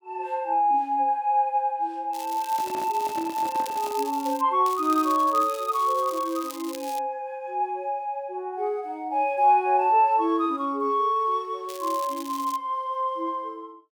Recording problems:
crackling; from 2 to 4.5 s, from 4.5 to 7 s and at 12 s; loose cable, SNR 16 dB
handling noise; from 2.5 to 4 s; peak -9 dB vs average level

